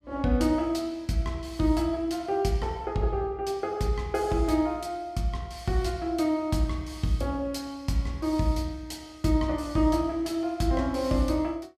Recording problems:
none

